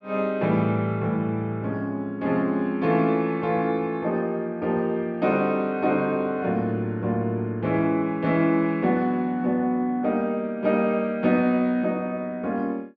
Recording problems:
treble missing; nothing above 8 kHz

